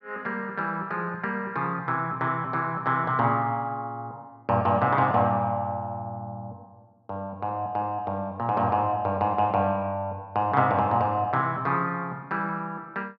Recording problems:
none

